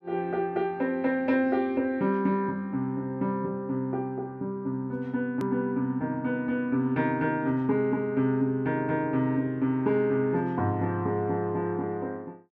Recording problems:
edit click; at 5.5 s

